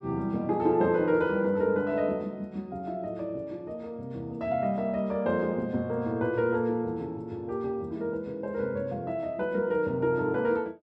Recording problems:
none

